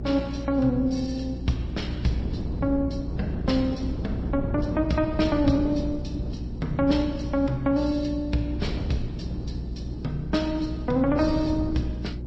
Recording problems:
lossy codec; MP3, then G.722, log-spectral distance 2 dB
hum; 60 Hz, harmonics up to 360 Hz, SNR 8 dB
wind noise; below 250 Hz, SNR 8 dB

